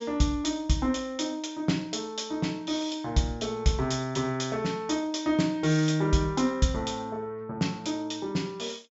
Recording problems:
treble cut off; nothing above 8 kHz

